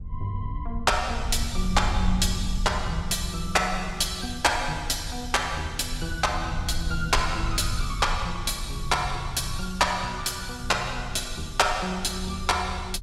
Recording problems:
rumble; below 76 Hz, SNR 8 dB

